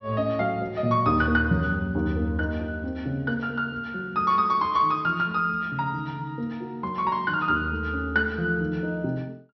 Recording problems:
treble missing; nothing above 5.8 kHz

